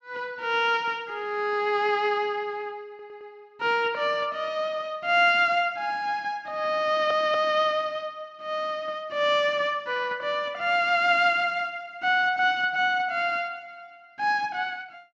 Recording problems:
stutter; at 3 s and at 7 s

